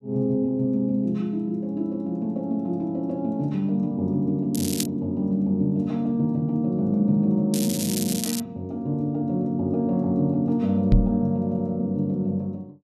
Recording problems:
crackle; at 4.5 s and at 7.5 s; loose cable, SNR 6 dB
microphone thump; at 11 s; peak +8 dB vs average level

